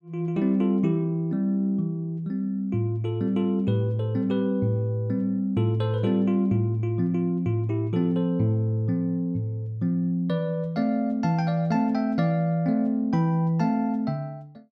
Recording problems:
none

